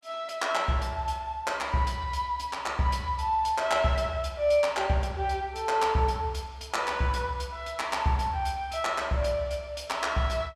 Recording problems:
none

